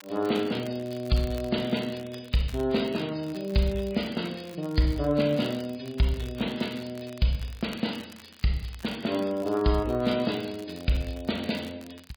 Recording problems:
lossy codec; MP3, log-spectral distance 8 dB
crackling; vinyl, SNR 22 dB

